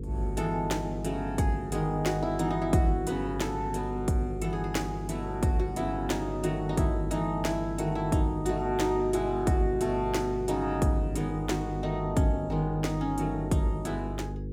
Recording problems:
hum; 50 Hz, harmonics up to 500 Hz, SNR 7 dB

